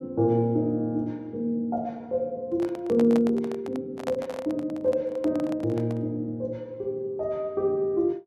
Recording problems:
microphone handling noise; from 2.5 to 6 s; peak -3 dB vs average level

